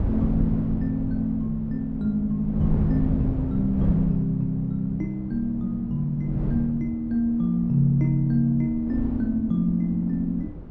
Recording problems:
wind on the microphone; below 180 Hz, SNR 8 dB

